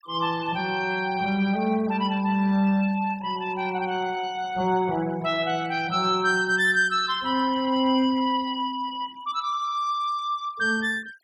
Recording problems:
noise reduction artefacts; signal-to-artefact ratio 23 dB

